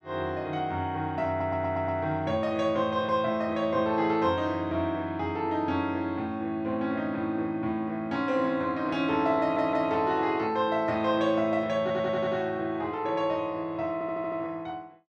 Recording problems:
audio stuttering; 4 times, first at 1.5 s

